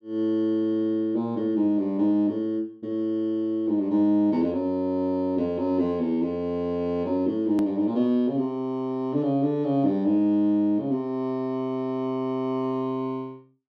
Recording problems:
edit click; at 7.5 s

